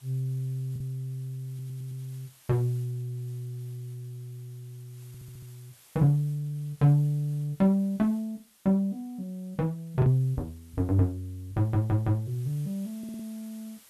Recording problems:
background hiss; slope +1 dB per octave, SNR 27 dB
packet loss; 0.7% of the sound replaced, filled with the last packet
audio stuttering; 4 times, first at 1.5 s

